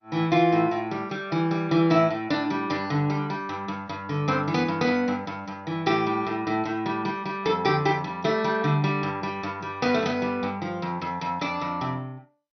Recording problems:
lossy compression; MP2, log-spectral distance 2 dB, nothing above 6 kHz

